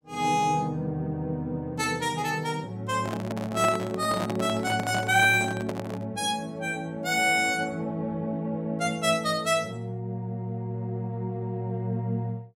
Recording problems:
handling noise; from 3 to 6 s; peak 0 dB vs average level

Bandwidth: 16 kHz